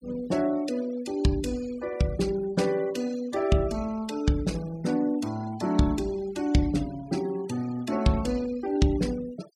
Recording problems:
denoising artefacts; signal-to-artefact ratio 20 dB

